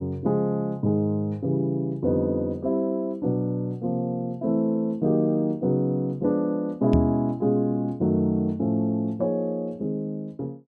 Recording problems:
knock on the microphone; at 7 s; peak +6 dB vs average level

